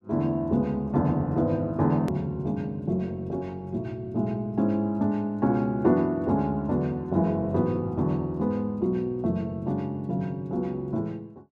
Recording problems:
click at an edit; at 2 s

